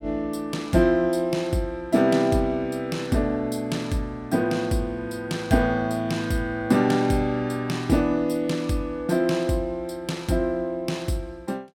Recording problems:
none

